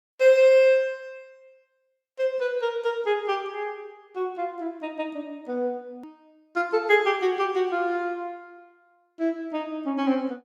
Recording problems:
hard cut with a click; at 6 s

